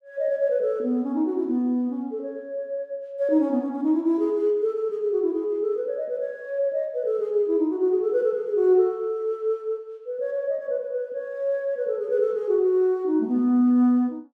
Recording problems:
none

